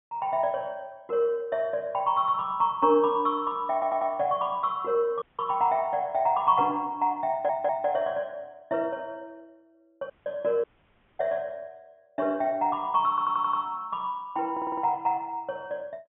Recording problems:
treble cut off; nothing above 3.5 kHz
stutter; 4 times, first at 3.5 s
audio cutting out; at 5 s, at 10 s and at 11 s for 0.5 s

